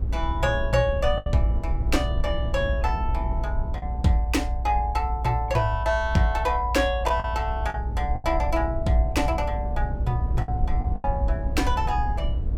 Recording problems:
low-frequency rumble; below 70 Hz, strongest tone 56 Hz, SNR 2 dB
packet loss; 4% of the sound replaced, filled with the last packet

